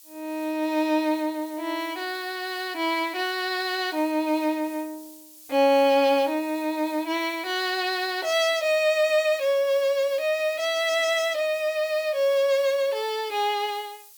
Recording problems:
background hiss; SNR 22 dB

